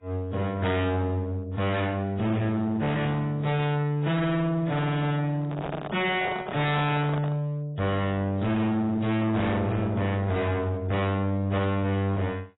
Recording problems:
codec artefacts; AAC, log-spectral distance 2 dB, nothing above 3.8 kHz
distorted audio; hard clipping, uneven, signal-to-distortion ratio 5 dB
handling noise; from 5.5 to 7.5 s; peak 0 dB vs average level

